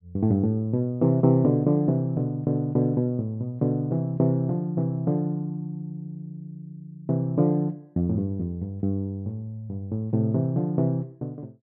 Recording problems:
none

